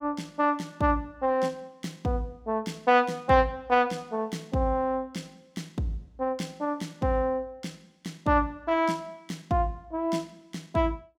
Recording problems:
none

